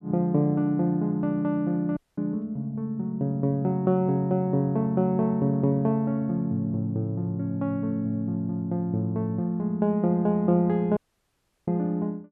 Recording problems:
dropout; at 2 s and at 11 s for 0.5 s

